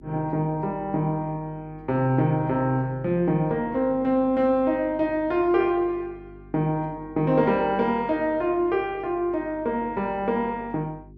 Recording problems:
mains hum; 50 Hz, harmonics up to 400 Hz, SNR 23 dB

